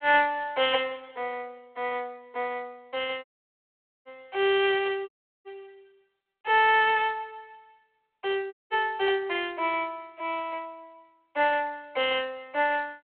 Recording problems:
telephone audio; 340 Hz to 3.6 kHz, G.726
audio cutting out; at 3 s for 1 s, at 5 s and at 8.5 s

